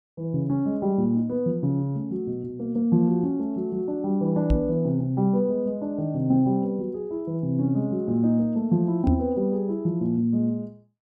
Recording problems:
microphone thump; at 4.5 s and at 9 s; peak +6 dB vs average level

